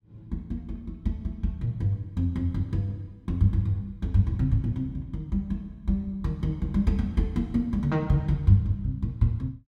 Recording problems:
none

